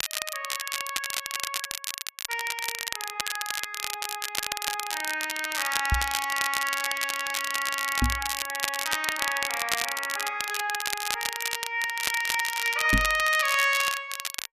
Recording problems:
crackle; vinyl, SNR 2 dB
knock on the microphone; at 6 s, at 8 s and at 13 s; peak +7 dB vs average level

